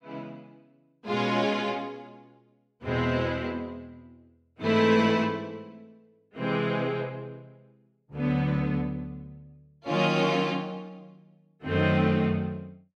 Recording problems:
none

